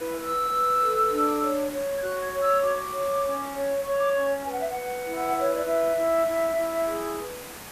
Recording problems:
background hiss; slope -3 dB per octave, SNR 14 dB

